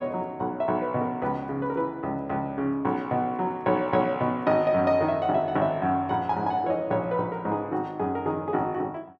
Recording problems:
none

